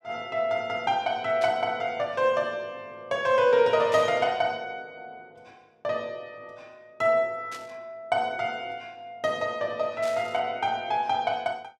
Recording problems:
static burst; 4 times, first at 1.5 s; peak -9 dB vs average level

